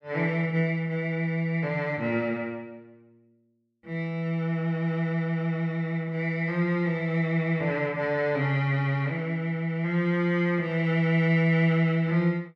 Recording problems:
none

